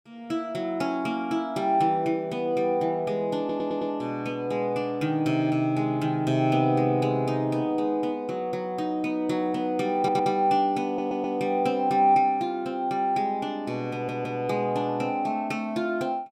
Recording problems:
audio stuttering; 4 times, first at 3.5 s

